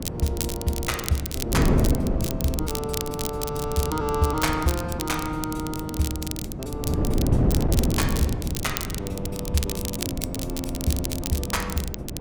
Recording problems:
wind noise; below 290 Hz, SNR 0 dB
crackle; vinyl, SNR 4 dB

